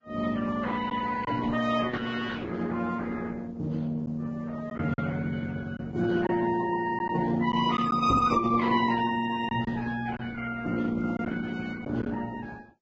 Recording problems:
lossy compression; Opus, then Vorbis, log-spectral distance 4 dB
lost packets; 2% of the sound replaced, filled with silence
microphone thump; at 8 s; peak +5 dB vs average level

